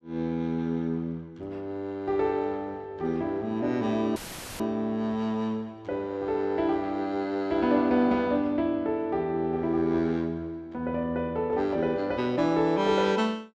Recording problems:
dropout; at 4 s; filled with static

